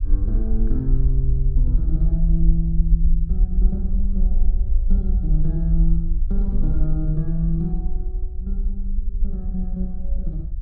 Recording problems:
low-frequency rumble; below 50 Hz, SNR -4 dB

